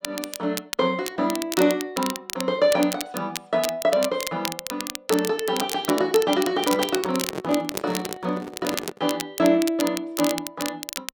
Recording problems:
crackle; vinyl, SNR 8 dB
microphone handling noise; from 6.5 to 9 s; peak -3 dB vs average level

